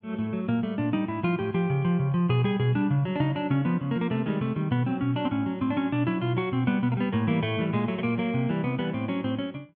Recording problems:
none

